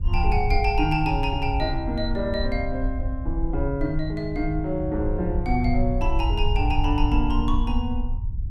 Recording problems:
low-frequency rumble; below 68 Hz, SNR 2 dB

